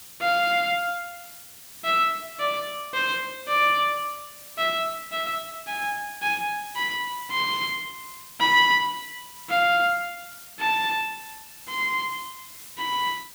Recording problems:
background hiss; slope +1 dB per octave, SNR 17 dB

